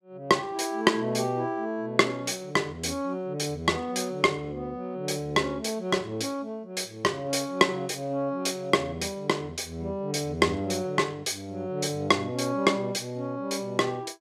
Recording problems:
none

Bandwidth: 14.5 kHz